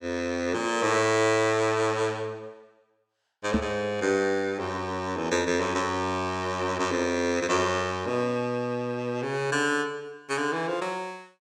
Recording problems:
microphone thump; at 3.5 s; peak +5 dB vs average level

